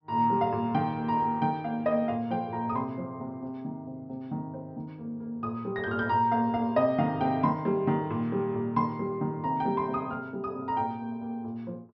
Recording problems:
low-pass filter; nothing above 5.7 kHz

